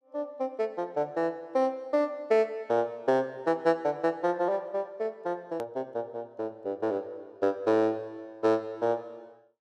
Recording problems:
hard cut with a click; at 5.5 s

